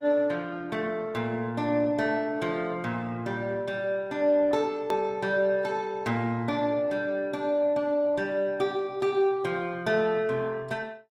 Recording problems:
codec artefacts; Opus, log-spectral distance 2 dB, nothing above 17.7 kHz
hard cut with a click; at 5 s

